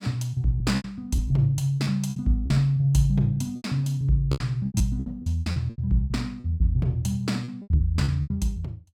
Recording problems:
lost packets; 15% of the sound replaced, filled with repeated pitch periods

